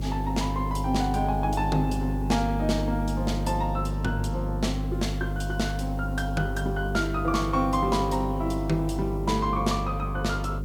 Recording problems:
hum; 50 Hz, harmonics up to 550 Hz, SNR 3 dB
background hiss; slope -1 dB per octave, SNR 27 dB

